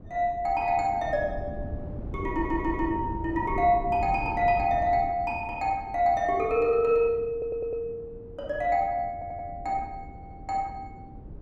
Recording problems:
wind on the microphone; below 220 Hz, SNR 13 dB
stutter; 4 times, first at 2.5 s

